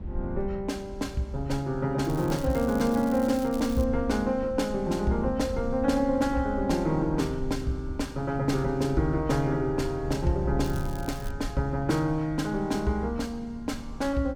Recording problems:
low-frequency rumble; below 94 Hz, SNR 12 dB
crackling; from 2 to 4 s and at 11 s; loose cable, SNR 19 dB

